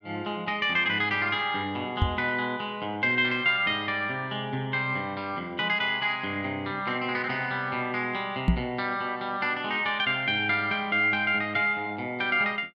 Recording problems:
microphone thump; at 2 s and at 8.5 s; peak +7 dB vs average level

